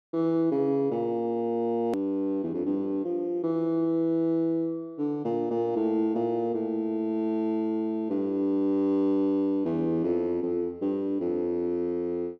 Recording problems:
edit click; at 2 s

